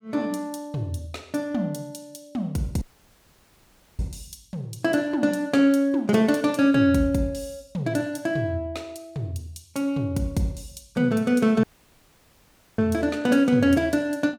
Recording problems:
dropout; at 3 s for 1 s and at 12 s for 1 s

